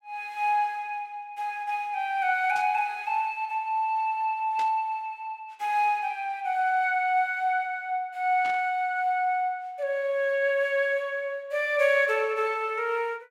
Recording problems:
burst of static; at 2.5 s, at 4.5 s and at 8.5 s; peak -10 dB vs average level

